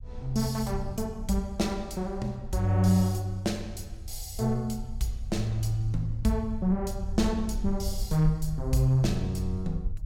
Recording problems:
rumble; below 64 Hz, SNR 10 dB

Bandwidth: 16 kHz